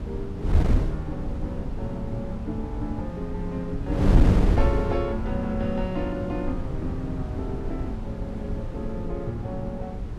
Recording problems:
wind on the microphone; below 140 Hz, SNR -3 dB

